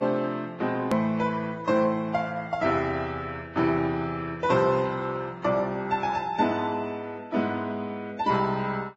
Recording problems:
codec artefacts; Vorbis, log-spectral distance 2 dB, nothing above 12.7 kHz
hard cut with a click; at 1 s

